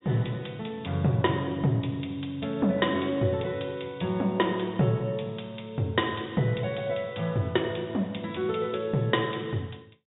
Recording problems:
low-pass filter; nothing above 4 kHz

